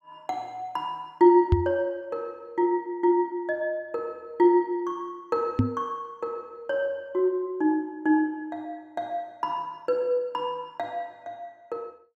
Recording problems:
knock on the microphone; at 1.5 s and at 5.5 s; peak +9 dB vs average level

